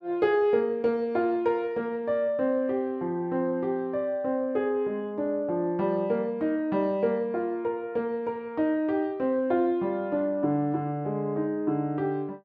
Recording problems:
none

